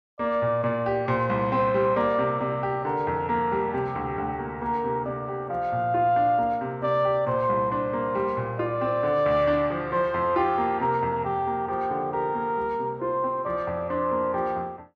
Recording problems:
none

